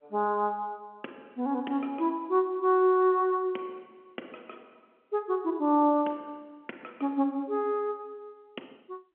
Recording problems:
phone line; 240 Hz to 3.8 kHz, G.711

